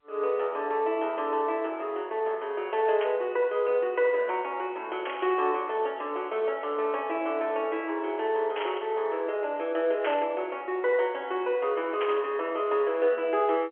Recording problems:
telephone audio; 340 Hz to 3.3 kHz, G.711
burst of static; 5 times, first at 3 s; peak -2 dB vs average level

